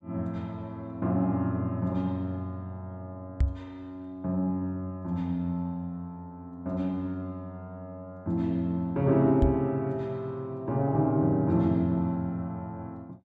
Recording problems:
microphone thump; at 3.5 s and at 9.5 s; peak +7 dB vs average level

